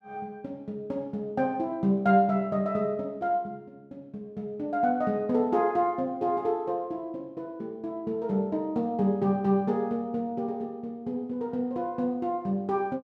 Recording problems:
none

